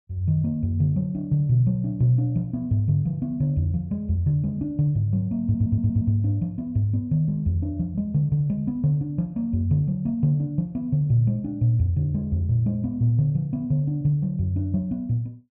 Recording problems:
audio stuttering; at 5.5 s

